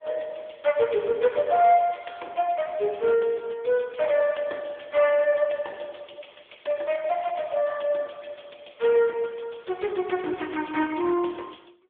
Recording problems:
phone line; 260 Hz to 3.4 kHz, AMR-NB

